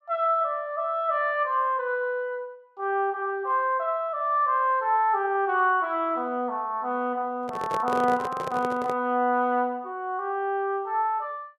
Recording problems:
handling noise; from 7.5 to 9 s; peak -2 dB vs average level

